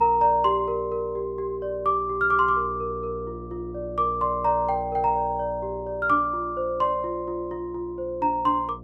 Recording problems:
electrical hum; 60 Hz, harmonics up to 720 Hz, SNR 17 dB

